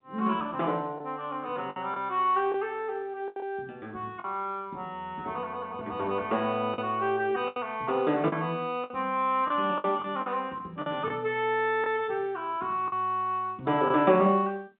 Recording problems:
phone line; 240 Hz to 3.7 kHz, G.711
packet loss; 5% of the sound replaced, filled with the last packet

